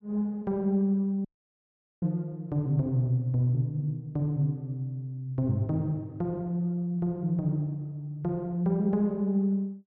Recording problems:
dropout; at 1.5 s for 1 s

